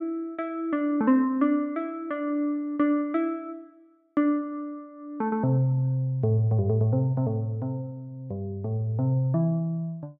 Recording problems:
none

